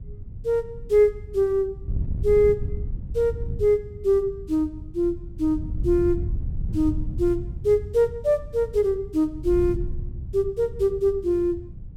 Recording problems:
wind noise; below 110 Hz, SNR 10 dB

